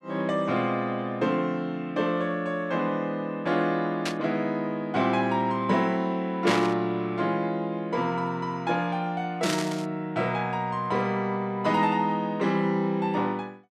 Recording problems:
static burst; at 4 s, at 6.5 s and at 9.5 s; peak +2 dB vs average level

